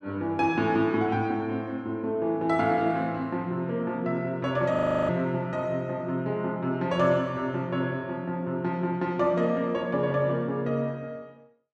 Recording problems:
frozen audio; at 5 s

